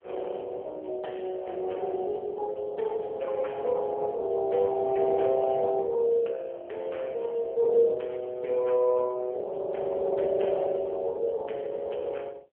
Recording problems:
telephone audio; 340 Hz to 3.3 kHz, AMR-NB

